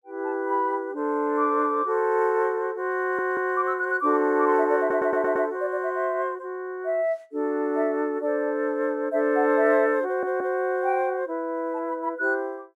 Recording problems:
stutter; at 3 s, at 5 s and at 10 s

